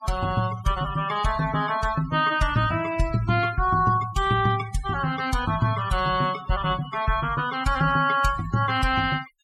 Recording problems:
noise reduction artefacts; signal-to-artefact ratio 15 dB

